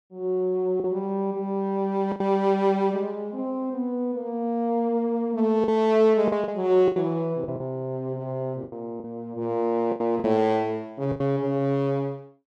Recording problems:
packet loss; 6% of the sound replaced, filled with the last packet

